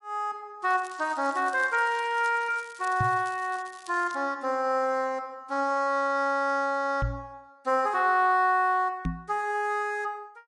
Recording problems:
lossy codec; MP3, log-spectral distance 2 dB
crackling; from 0.5 to 4 s; loose cable, SNR 23 dB
knock on the microphone; at 3 s, at 7 s and at 9 s; peak +1 dB vs average level

